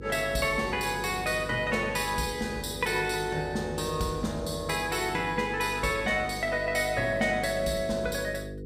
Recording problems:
hum; 50 Hz, harmonics up to 500 Hz, SNR 12 dB

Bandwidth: 15.5 kHz